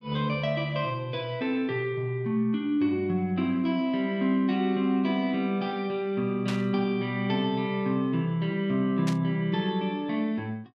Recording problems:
burst of static; at 6.5 s and at 9 s; peak -5 dB vs average level

